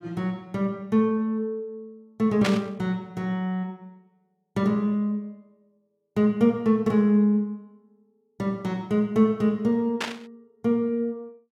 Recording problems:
burst of static; at 2.5 s and at 10 s; peak +2 dB vs average level

